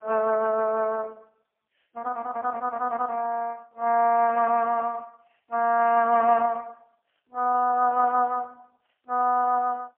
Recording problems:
telephone audio; 300 Hz to 2.6 kHz, AMR-NB, then MP3

